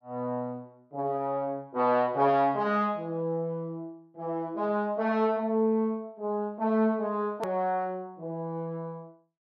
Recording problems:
edit click; at 7.5 s

